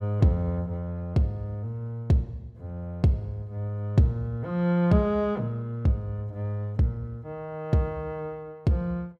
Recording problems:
none

